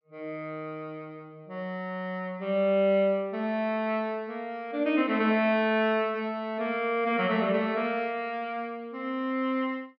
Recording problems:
low-pass filter; nothing above 5.5 kHz

